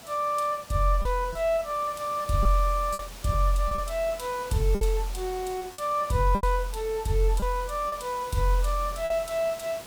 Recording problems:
background hiss; slope -2 dB per octave, SNR 16 dB
lost packets; 5% of the sound replaced, filled with repeated pitch periods

